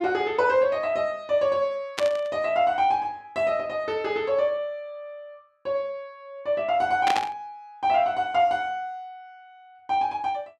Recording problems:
burst of static; at 2 s and at 7 s; peak +1 dB vs average level

